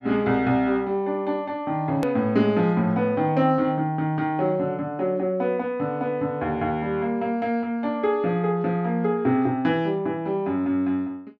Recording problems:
edit click; at 2 s

